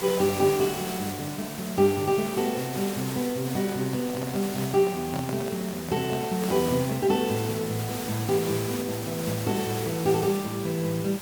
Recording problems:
background hiss; slope -3 dB per octave, SNR 8 dB
microphone handling noise; from 3.5 to 7 s; peak -5 dB vs average level

